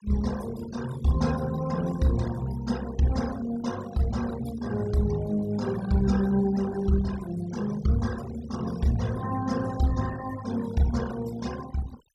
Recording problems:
noise reduction artefacts; signal-to-artefact ratio 16 dB

